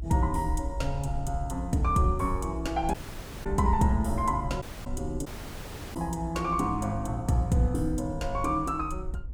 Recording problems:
rumble; below 64 Hz, SNR 9 dB
dropout; at 3 s for 0.5 s, at 4.5 s and at 5.5 s for 0.5 s

